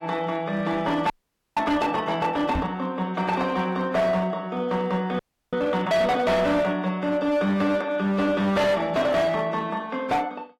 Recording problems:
lossy codec; AAC, log-spectral distance 2 dB, nothing above 15.1 kHz
distortion; hard clipping, signal-to-distortion ratio 10 dB
frozen audio; at 1 s and at 5 s
microphone bump; at 2.5 s; peak 0 dB vs average level

